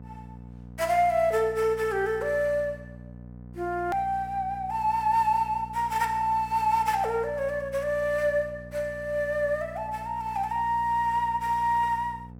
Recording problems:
hum; 60 Hz, harmonics up to 960 Hz, SNR 17 dB
edit click; at 4 s

